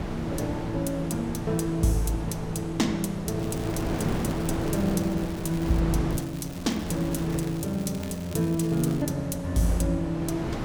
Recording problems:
wind noise; below 560 Hz, SNR 6 dB
crackle; from 3.5 to 6 s and from 6 to 9 s; loose cable, SNR 18 dB

